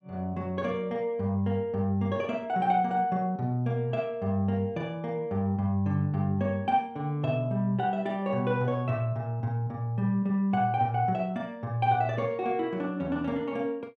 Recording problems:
none

